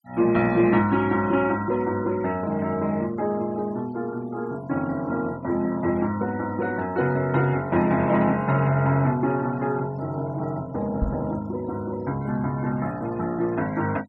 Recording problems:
denoising artefacts; signal-to-artefact ratio 24 dB
knock on the microphone; at 11 s; peak +2 dB vs average level

